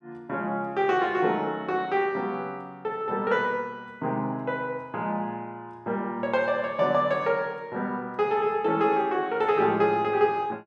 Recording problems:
none

